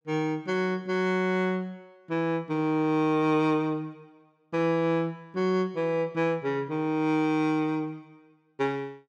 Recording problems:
none

